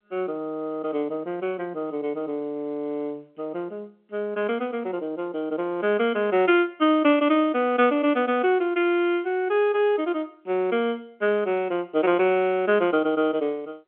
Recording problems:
telephone audio; 220 Hz to 3.4 kHz, G.711

